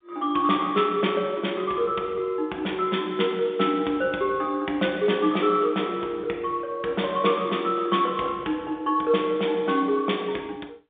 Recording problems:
phone line; 240 Hz to 3.7 kHz, G.711

